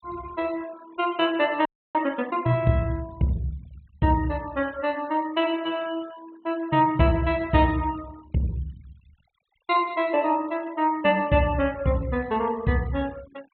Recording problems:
treble cut off; nothing above 4 kHz
denoising artefacts; signal-to-artefact ratio 23 dB
frozen audio; at 1.5 s

